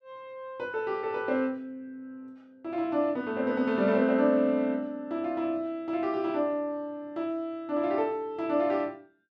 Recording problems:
none

